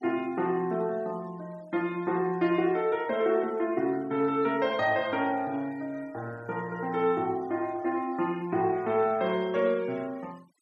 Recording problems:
noise reduction artefacts; signal-to-artefact ratio 25 dB

